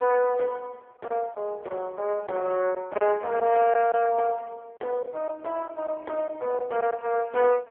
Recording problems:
telephone audio; 320 Hz to 3.2 kHz, AMR-NB
packet loss; 3% of the sound replaced, filled with silence

